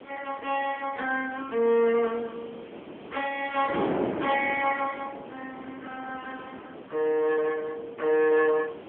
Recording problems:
telephone audio; 220 Hz to 3.1 kHz, AMR-NB
background hiss; SNR 27 dB
wind noise; below 660 Hz, SNR 11 dB

